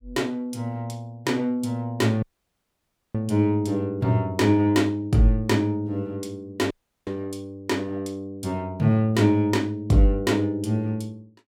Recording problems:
dropout; at 2 s for 1 s and at 6.5 s

